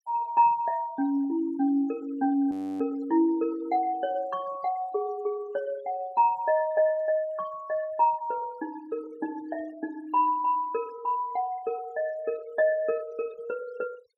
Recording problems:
denoising artefacts; signal-to-artefact ratio 24 dB
frozen audio; at 2.5 s

